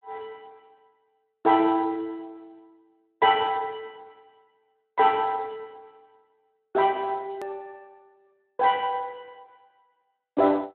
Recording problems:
telephone audio; 190 Hz to 3.9 kHz, Speex
click at an edit; at 7.5 s

